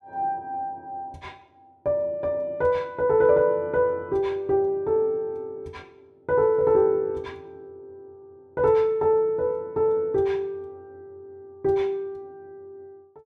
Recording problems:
none

